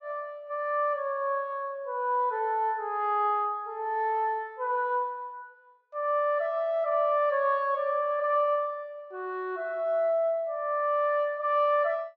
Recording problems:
none

